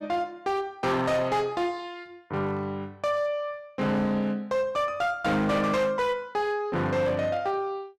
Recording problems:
distortion; hard clipping, signal-to-distortion ratio 11 dB

